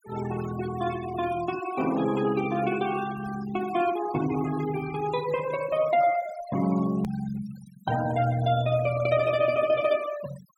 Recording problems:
noise reduction artefacts; signal-to-artefact ratio 15 dB
click at an edit; at 7 s

